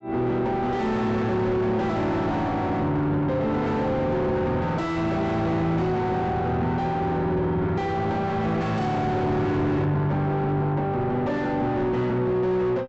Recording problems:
treble missing; nothing above 7.8 kHz
distorted audio; soft clipping, signal-to-distortion ratio 4 dB

